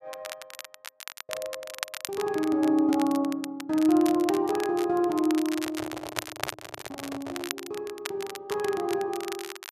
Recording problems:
crackling; vinyl, SNR 12 dB
handling noise; from 5.5 to 7.5 s; peak -6 dB vs average level

